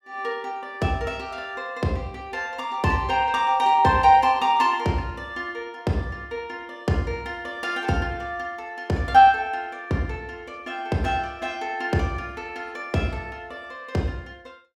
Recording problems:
none

